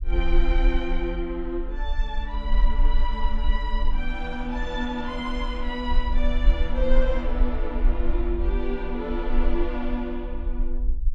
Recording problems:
rumble; below 40 Hz, strongest tone 20 Hz, SNR -2 dB

